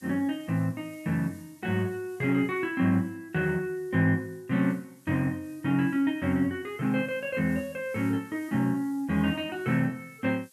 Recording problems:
hiss; SNR 27 dB

